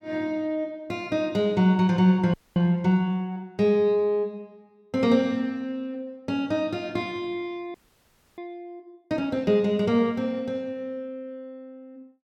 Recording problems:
audio freezing; at 2.5 s and at 7.5 s for 0.5 s

